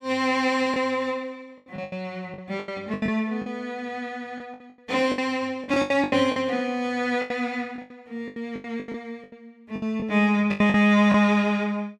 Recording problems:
packet loss; 14% of the sound replaced, filled with the last packet

